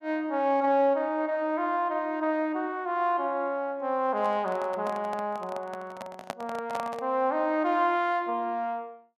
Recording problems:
microphone handling noise; from 4 to 7 s; peak -2 dB vs average level

